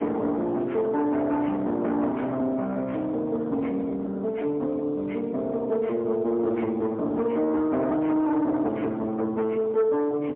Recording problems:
telephone audio; 260 Hz to 2.2 kHz, AMR-NB, then MP3
distortion; soft clipping, signal-to-distortion ratio 12 dB

